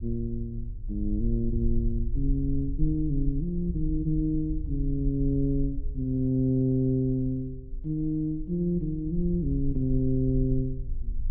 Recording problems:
low-frequency rumble; below 50 Hz, SNR 7 dB

